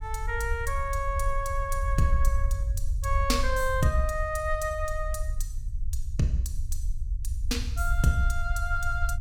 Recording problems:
low-frequency rumble; below 62 Hz, SNR 2 dB

